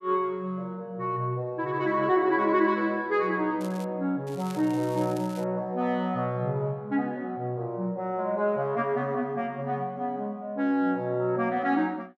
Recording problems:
crackling; at 3.5 s and from 4.5 to 5.5 s; loose cable, SNR 21 dB

